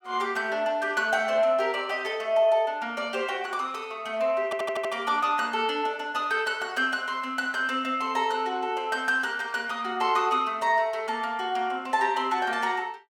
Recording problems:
audio stuttering; at 4.5 s

